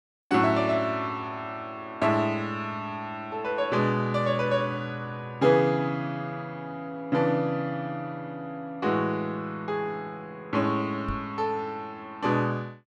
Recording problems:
microphone thump; at 11 s; peak -2 dB vs average level

